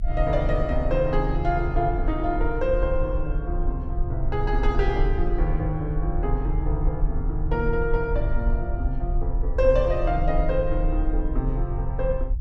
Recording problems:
rumble; below 50 Hz, SNR 2 dB

